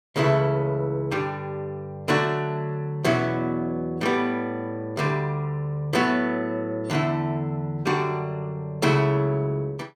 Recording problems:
none

